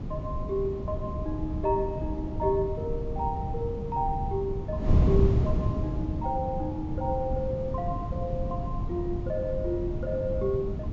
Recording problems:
treble missing; nothing above 7.5 kHz
wind on the microphone; below 170 Hz, SNR 0 dB

